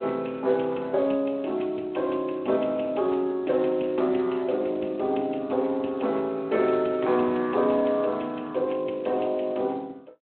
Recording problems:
telephone audio; 260 Hz to 3.5 kHz, Speex

